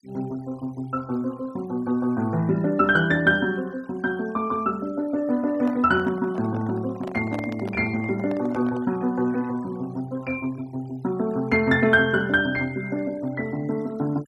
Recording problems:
noise reduction artefacts; signal-to-artefact ratio 24 dB
microphone handling noise; from 5.5 to 9 s; peak -7 dB vs average level

